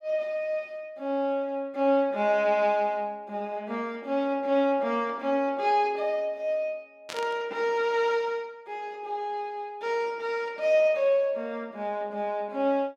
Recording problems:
burst of static; at 7 s; peak -6 dB vs average level

